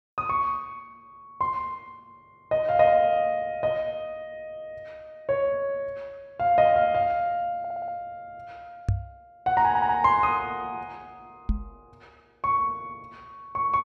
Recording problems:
stutter; at 7.5 s and at 9.5 s
microphone thump; at 9 s and at 11 s; peak +3 dB vs average level

